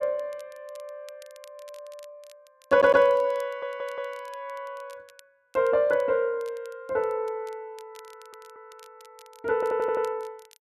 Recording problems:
crackle; vinyl, SNR 29 dB
stutter; 4 times, first at 2.5 s

